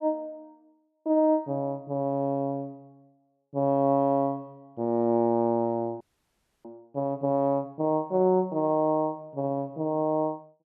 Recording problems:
audio freezing; at 6 s for 0.5 s

